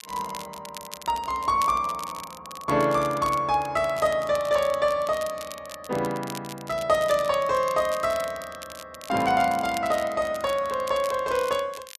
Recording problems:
crackling; vinyl, SNR 17 dB

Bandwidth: 13.5 kHz